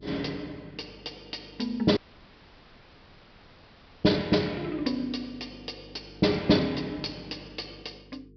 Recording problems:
treble missing; nothing above 5.5 kHz
hum; 50 Hz, harmonics up to 450 Hz, SNR 23 dB
dropout; at 2 s for 2 s

